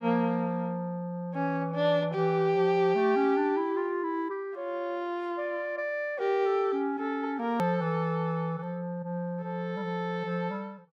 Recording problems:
hard cut with a click; at 7.5 s

